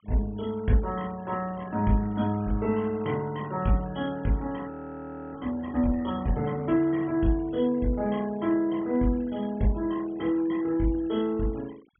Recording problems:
low-pass filter; nothing above 3.3 kHz
noise reduction artefacts; signal-to-artefact ratio 24 dB
audio freezing; at 4.5 s for 0.5 s

